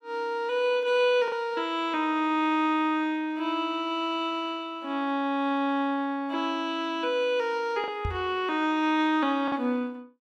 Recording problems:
lost packets; 1.2% of the sound replaced, filled with the last packet
microphone bump; at 8 s; peak -1 dB vs average level

